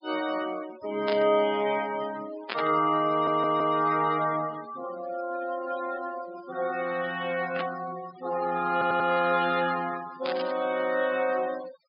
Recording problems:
treble cut off; nothing above 5.5 kHz
noise reduction artefacts; signal-to-artefact ratio 16 dB
burst of static; 4 times, first at 1 s; peak -1 dB vs average level
stutter; at 3 s and at 8.5 s

